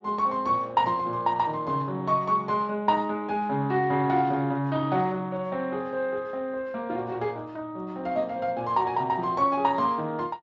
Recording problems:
lossy compression; Speex, log-spectral distance 2 dB

